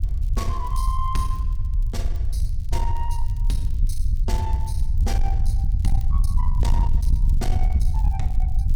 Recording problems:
distorted audio; soft clipping, signal-to-distortion ratio 11 dB
rumble; below 68 Hz, SNR -9 dB
crackling; vinyl, SNR 23 dB

